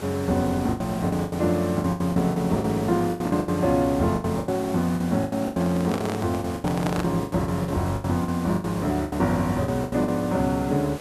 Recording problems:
hiss; slope -5 dB per octave, SNR 13 dB
packet loss; 16% of the sound replaced, filled with the last packet
microphone handling noise; from 5.5 to 7 s; peak -1 dB vs average level

